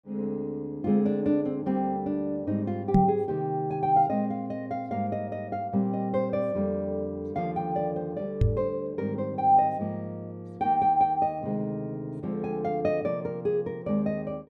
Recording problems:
microphone bump; at 3 s and at 8.5 s; peak +10 dB vs average level

